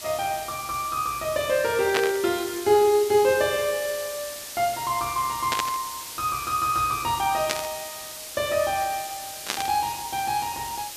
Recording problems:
background hiss; slope +1 dB per octave, SNR 10 dB
static burst; 4 times, first at 2 s; peak +5 dB vs average level

